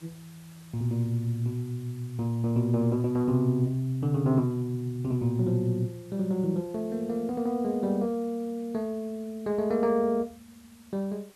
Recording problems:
background hiss; slope -1 dB per octave, SNR 27 dB

